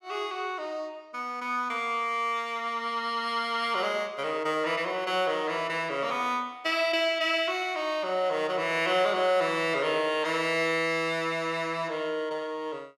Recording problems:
none

